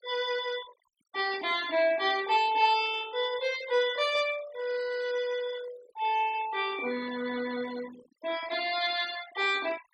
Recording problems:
noise reduction artefacts; signal-to-artefact ratio 16 dB

